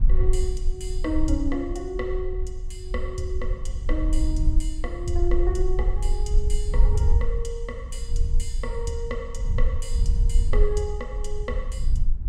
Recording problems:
rumble; below 54 Hz, SNR -4 dB

